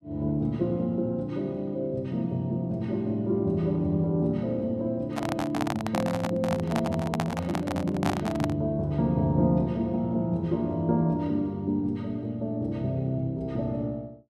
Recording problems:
handling noise; from 5 to 8.5 s; peak +3 dB vs average level

